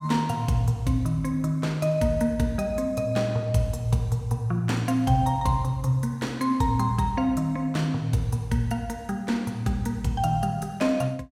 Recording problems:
none

